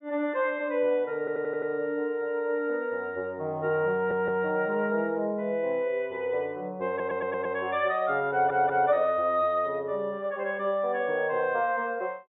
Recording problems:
treble cut off; nothing above 4 kHz
stutter; 4 times, first at 1 s

